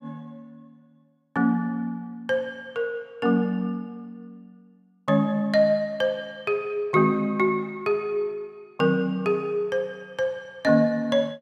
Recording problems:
none

